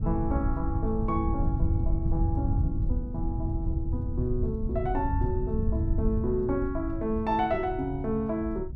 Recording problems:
wind on the microphone; below 100 Hz, SNR 0 dB

